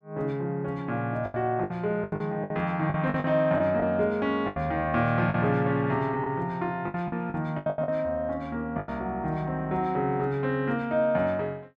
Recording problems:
lost packets; 9% of the sound replaced, filled with the last packet

